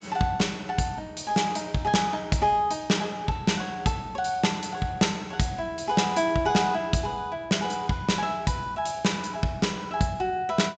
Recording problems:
low-pass filter; nothing above 8 kHz

